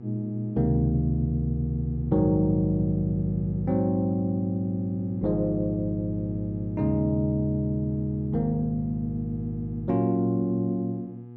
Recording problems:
low-pass filter; nothing above 8 kHz
hum; 60 Hz, harmonics up to 840 Hz, SNR 15 dB

